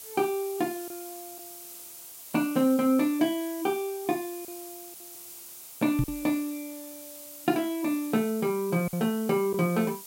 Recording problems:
background hiss; SNR 14 dB
packet loss; 2% of the sound replaced, filled with silence
knock on the microphone; at 6 s; peak +3 dB vs average level

